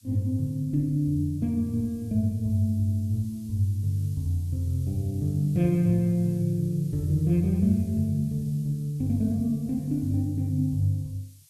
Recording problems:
background hiss; SNR 27 dB

